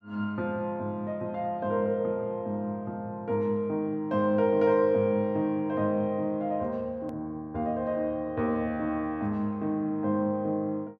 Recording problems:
hard cut with a click; at 7 s

